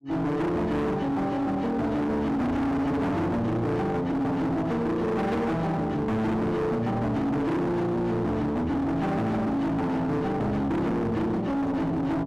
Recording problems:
distortion; hard clipping, uneven, signal-to-distortion ratio 6 dB

